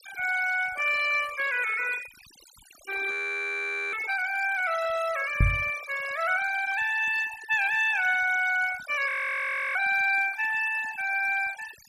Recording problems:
denoising artefacts; signal-to-artefact ratio 14 dB
audio freezing; at 3 s for 1 s and at 9 s for 0.5 s
microphone bump; at 5.5 s; peak +5 dB vs average level

